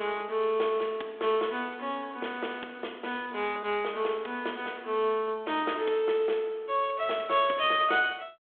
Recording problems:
telephone audio; 280 Hz to 3.6 kHz, G.726

